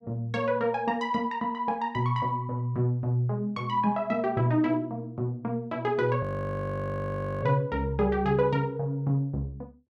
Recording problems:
audio freezing; at 6 s for 1 s

